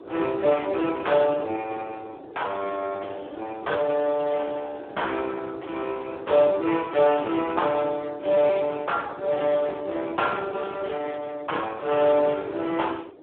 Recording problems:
phone line; 260 Hz to 3.4 kHz, Speex
wind noise; below 510 Hz, SNR 18 dB

